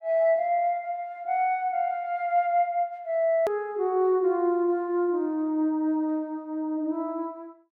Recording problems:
hard cut with a click; at 3.5 s

